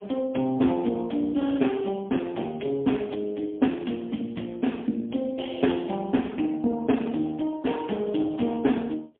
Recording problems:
phone line; 150 Hz to 3.4 kHz, AMR-NB, then MP3

